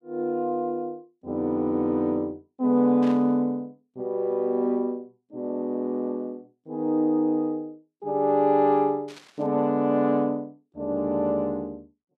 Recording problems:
burst of static; at 3 s and at 9 s; peak -14 dB vs average level

